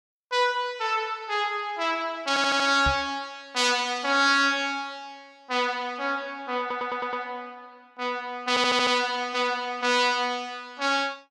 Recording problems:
stutter; at 2.5 s, at 6.5 s and at 8.5 s
microphone thump; at 3 s; peak -1 dB vs average level

